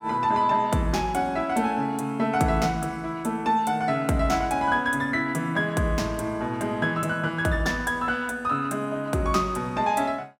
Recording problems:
none

